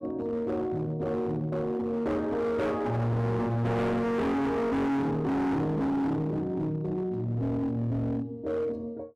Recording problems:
distorted audio; hard clipping, signal-to-distortion ratio 6 dB

